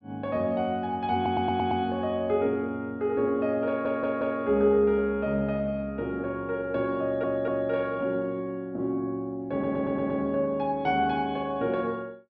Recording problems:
treble missing; nothing above 5.5 kHz
stutter; 4 times, first at 1 s

